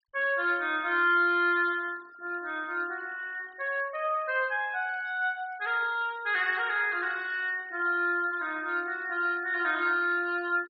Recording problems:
treble missing; nothing above 5.5 kHz
noise reduction artefacts; signal-to-artefact ratio 24 dB

